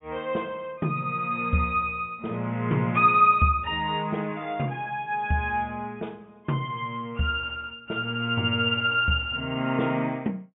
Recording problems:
treble missing; nothing above 3.4 kHz

